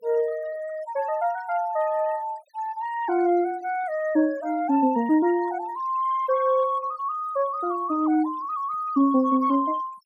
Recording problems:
noise reduction artefacts; signal-to-artefact ratio 23 dB

